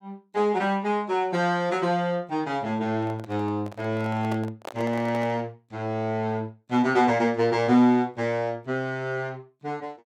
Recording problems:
handling noise; from 3 to 5.5 s; peak -6 dB vs average level

